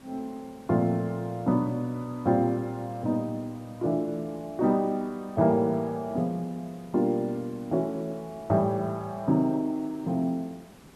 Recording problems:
hiss; slope -5 dB per octave, SNR 23 dB

